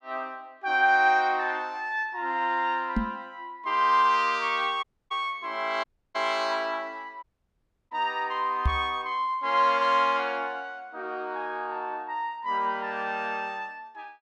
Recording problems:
microphone bump; at 3 s and at 8.5 s; peak +5 dB vs average level
dropout; at 5 s, at 6 s and at 7 s for 0.5 s

